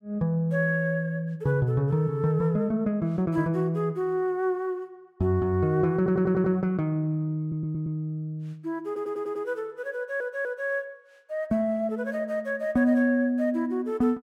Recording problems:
audio stuttering; 4 times, first at 6 s

